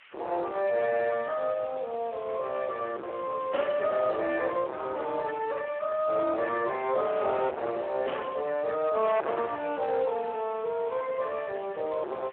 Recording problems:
phone line; 300 Hz to 2.8 kHz, Speex
distortion; hard clipping, signal-to-distortion ratio 7 dB
background hiss; SNR 22 dB

